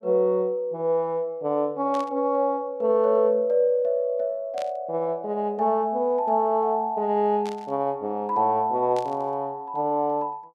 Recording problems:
static burst; 4 times, first at 2 s; peak -13 dB vs average level

